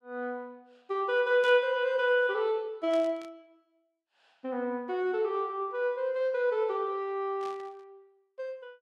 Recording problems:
static burst; at 1.5 s, at 3 s and at 7.5 s; peak -14 dB vs average level

